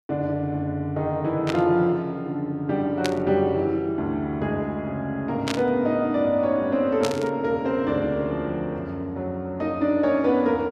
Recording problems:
static burst; 4 times, first at 1.5 s; peak 0 dB vs average level

